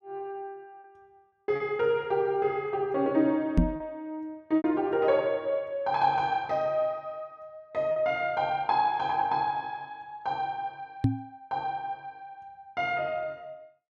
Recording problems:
packet loss; 2% of the sound replaced, filled with repeated pitch periods
microphone bump; at 3.5 s and at 11 s; peak +9 dB vs average level

